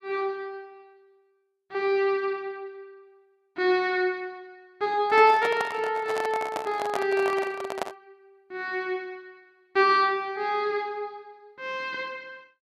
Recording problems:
handling noise; from 5 to 8 s; peak 0 dB vs average level

